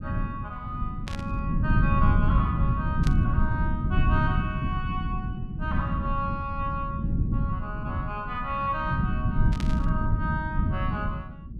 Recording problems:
low-frequency rumble; below 170 Hz, SNR -5 dB
burst of static; at 1 s, at 3 s and at 9.5 s; peak -1 dB vs average level

